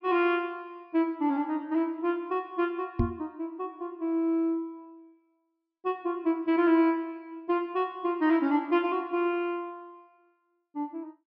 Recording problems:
treble missing; nothing above 5.5 kHz
microphone thump; at 3 s; peak +5 dB vs average level

